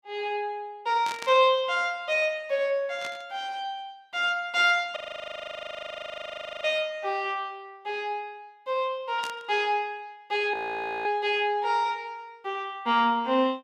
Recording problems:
static burst; at 1 s, at 3 s and at 9 s; peak -5 dB vs average level
frozen audio; at 5 s for 1.5 s and at 11 s for 0.5 s

